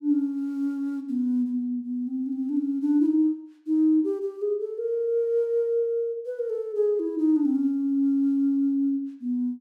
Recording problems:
none

